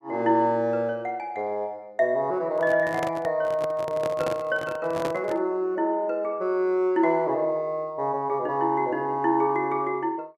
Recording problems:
microphone handling noise; from 2.5 to 5.5 s; peak -1 dB vs average level

